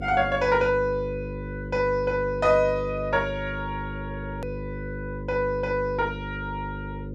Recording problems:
electrical hum; 50 Hz, harmonics up to 550 Hz, SNR 9 dB
edit click; at 4.5 s

